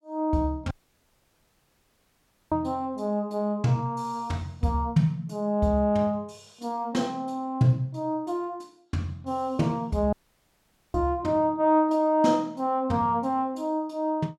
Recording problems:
dropout; at 0.5 s for 2 s and at 10 s for 1 s

